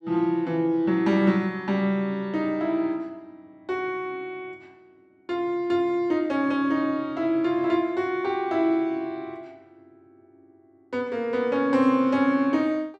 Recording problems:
none

